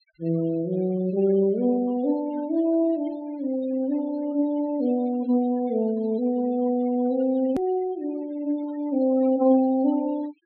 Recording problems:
low-pass filter; nothing above 4.3 kHz
noise reduction artefacts; signal-to-artefact ratio 23 dB
edit click; at 7.5 s

